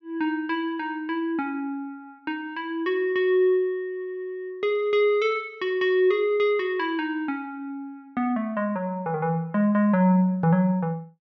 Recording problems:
none

